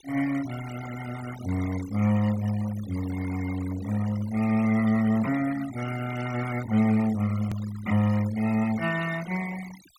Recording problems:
denoising artefacts; signal-to-artefact ratio 15 dB
hard cut with a click; at 7.5 s

